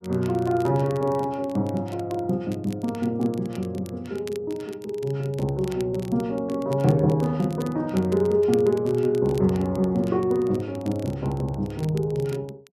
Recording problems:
crackling; vinyl, SNR 23 dB

